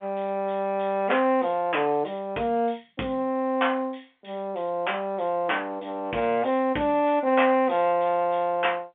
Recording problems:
phone line; 190 Hz to 3.3 kHz, G.711

